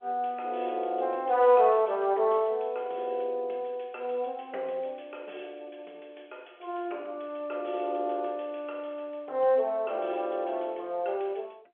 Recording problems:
telephone audio; 320 Hz to 3.3 kHz, G.711

